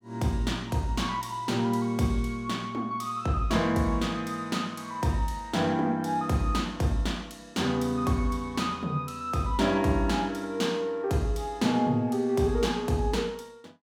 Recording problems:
none

